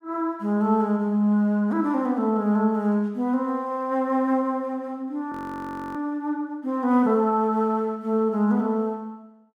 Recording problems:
frozen audio; at 5.5 s for 0.5 s

